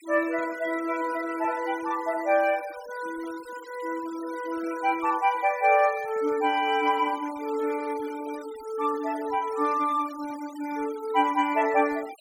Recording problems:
noise reduction artefacts; signal-to-artefact ratio 19 dB

